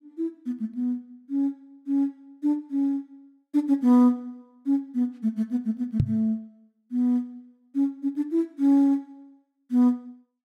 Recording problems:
microphone bump; at 6 s; peak +7 dB vs average level

